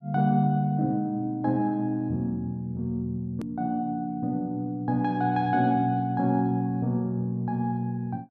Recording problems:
hard cut with a click; at 3.5 s

